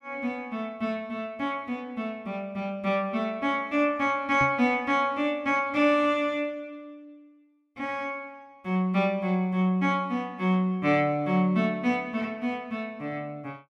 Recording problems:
microphone bump; at 4.5 s; peak -2 dB vs average level

